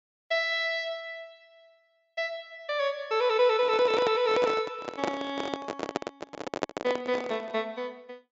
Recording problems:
treble cut off; nothing above 7.6 kHz
handling noise; from 3.5 to 7.5 s; peak +3 dB vs average level

